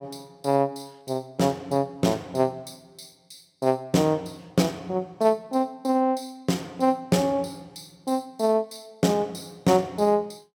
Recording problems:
none

